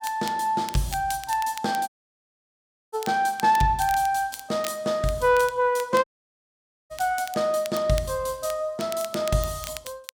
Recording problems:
crackle; vinyl, SNR 16 dB
audio cutting out; at 2 s for 1 s and at 6 s for 1 s

